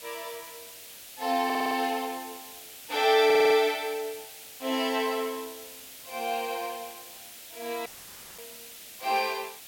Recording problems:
background hiss; SNR 15 dB
audio stuttering; at 1.5 s and at 3.5 s
audio cutting out; at 8 s for 0.5 s; filled with static

